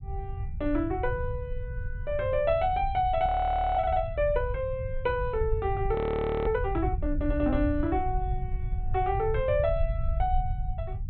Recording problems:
low-pass filter; nothing above 4 kHz
rumble; below 92 Hz, SNR 5 dB
audio freezing; at 3.5 s for 0.5 s and at 6 s for 0.5 s

